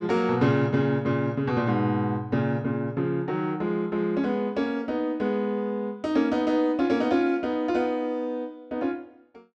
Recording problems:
none

